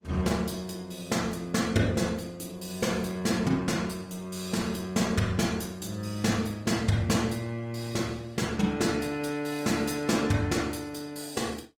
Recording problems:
lossy codec; Opus, log-spectral distance 4 dB

